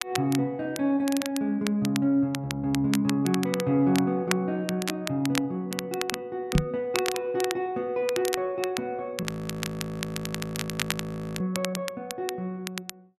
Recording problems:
crackling; vinyl, SNR 8 dB
microphone bump; at 6.5 s; peak +9 dB vs average level
audio freezing; at 9 s for 2 s

